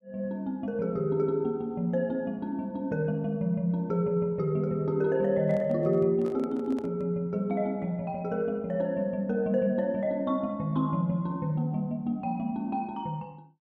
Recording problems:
microphone handling noise; from 5.5 to 7 s; peak -11 dB vs average level

